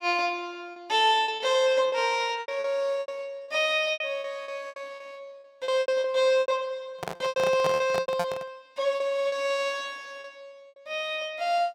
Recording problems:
packet loss; 12% of the sound replaced, filled with repeated pitch periods
handling noise; from 7 to 8.5 s; peak 0 dB vs average level

